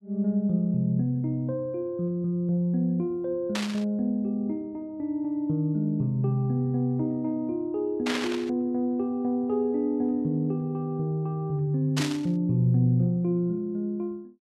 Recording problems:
static burst; at 3.5 s, at 8 s and at 12 s; peak 0 dB vs average level

